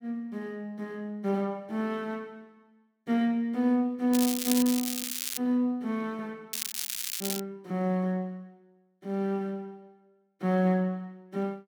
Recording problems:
crackling; from 4 to 5.5 s and at 6.5 s; loose cable, SNR 2 dB

